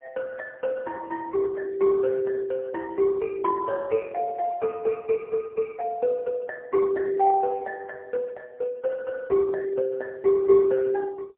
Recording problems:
telephone audio; 340 Hz to 2.1 kHz, AMR-NB, then MP3

